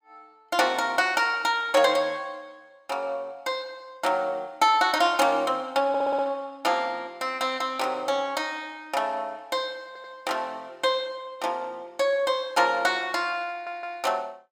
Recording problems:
stutter; at 6 s, at 10 s and at 14 s

